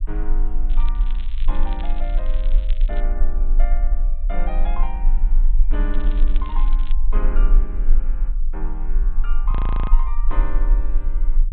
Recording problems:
low-pass filter; nothing above 4 kHz
low-frequency rumble; below 34 Hz, strongest tone 22 Hz, SNR -13 dB
crackle; from 0.5 to 3 s and at 6 s; loose cable, SNR 11 dB
audio freezing; at 9.5 s

